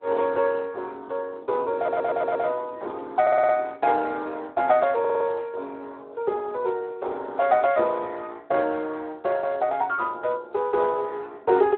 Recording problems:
phone line; 280 Hz to 2.8 kHz, Speex
wind noise; below 560 Hz, SNR 19 dB
audio stuttering; at 2 s, at 3 s and at 5 s

